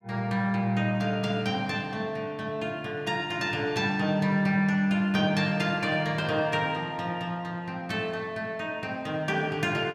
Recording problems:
none

